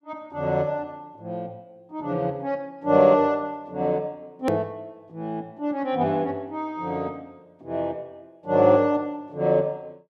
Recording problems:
edit click; at 4.5 s

